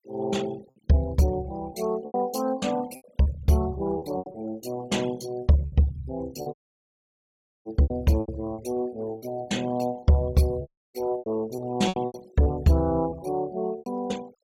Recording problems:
noise reduction artefacts; signal-to-artefact ratio 21 dB
lost packets; 9% of the sound replaced, filled with repeated pitch periods
audio cutting out; at 6.5 s for 1 s and at 11 s

